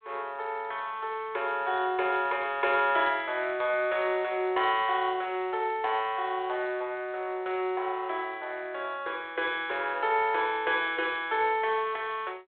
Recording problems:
telephone audio; 320 Hz to 3.6 kHz, G.726

